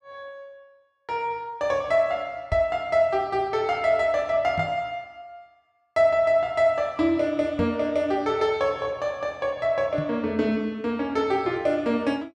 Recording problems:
microphone thump; 4 times, first at 2.5 s; peak -1 dB vs average level

